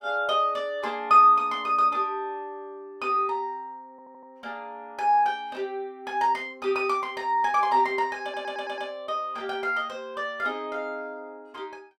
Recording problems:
stutter; at 4 s and at 8 s

